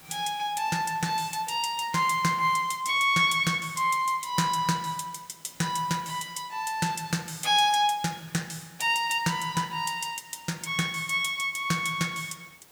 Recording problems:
background hiss; slope -2 dB per octave, SNR 25 dB

